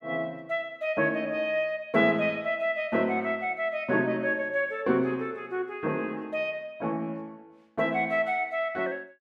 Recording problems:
none

